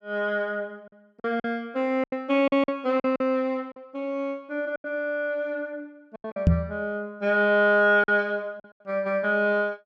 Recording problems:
packet loss; 7% of the sound replaced, filled with silence
knock on the microphone; at 6.5 s; peak +9 dB vs average level

